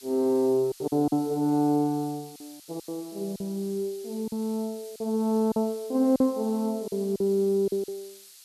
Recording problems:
background hiss; SNR 20 dB
packet loss; 8% of the sound replaced, filled with silence

